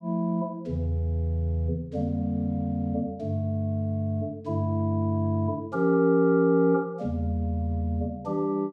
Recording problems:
none

